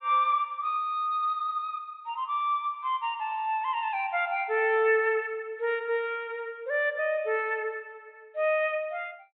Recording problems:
treble cut off; nothing above 4 kHz

